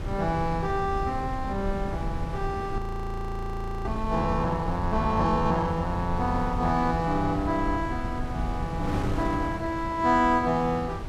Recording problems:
rumble; below 92 Hz, SNR 9 dB
wind noise; below 520 Hz, SNR 9 dB
frozen audio; at 3 s for 1 s

